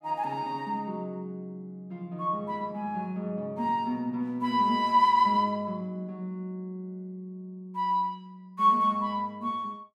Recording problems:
none

